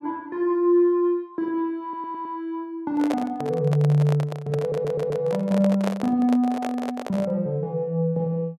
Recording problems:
stutter; at 2 s and at 4.5 s
handling noise; from 3 to 7.5 s; peak 0 dB vs average level

